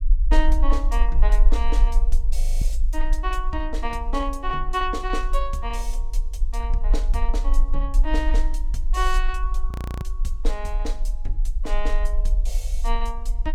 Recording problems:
low-frequency rumble; below 42 Hz, strongest tone 18 Hz, SNR -5 dB
frozen audio; at 2.5 s and at 9.5 s

